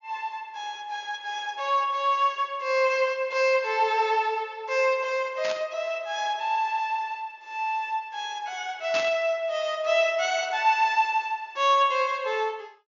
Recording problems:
low-pass filter; nothing above 6.9 kHz
burst of static; at 5.5 s and at 9 s; peak -2 dB vs average level

